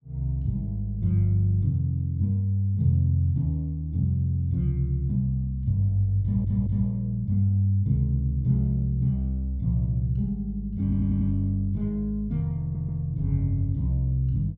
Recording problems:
stutter; at 6 s, at 11 s and at 13 s

